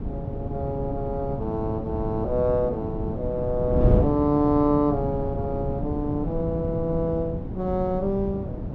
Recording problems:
wind on the microphone; below 230 Hz, SNR 4 dB

